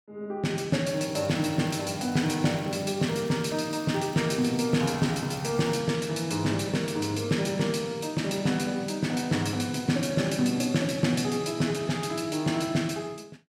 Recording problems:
crackle; from 1 to 6 s; loose cable, SNR 27 dB

